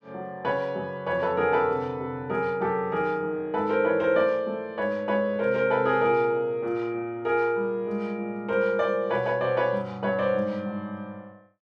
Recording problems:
none

